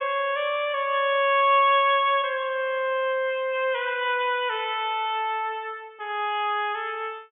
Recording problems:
treble missing; nothing above 3.4 kHz

